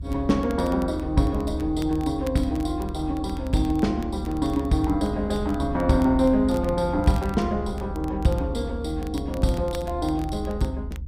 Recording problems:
rumble; below 74 Hz, strongest tone 72 Hz, SNR 9 dB
crackle; vinyl, SNR 24 dB

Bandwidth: 15.5 kHz